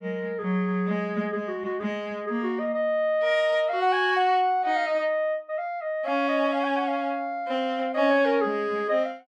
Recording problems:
none

